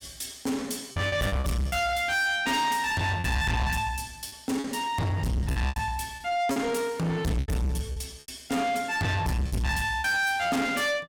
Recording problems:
distorted audio; soft clipping, signal-to-distortion ratio 7 dB
lost packets; 7% of the sound replaced, filled with repeated pitch periods

